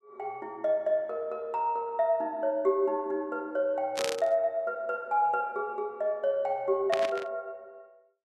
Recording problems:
static burst; at 4 s and at 7 s; peak +2 dB vs average level

